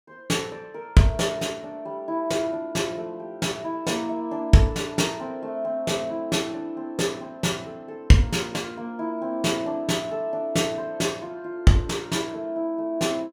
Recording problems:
none

